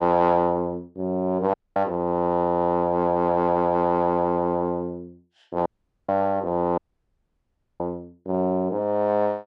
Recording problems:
dropout; at 1.5 s, at 5.5 s and at 7 s for 1 s

